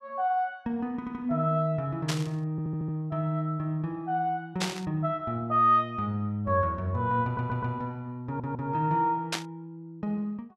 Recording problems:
audio stuttering; 4 times, first at 1 s
burst of static; at 2 s, at 4.5 s and at 9.5 s; peak +4 dB vs average level

